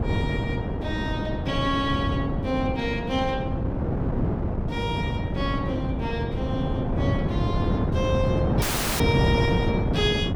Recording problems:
wind on the microphone; below 330 Hz, SNR -3 dB
dropout; at 8.5 s

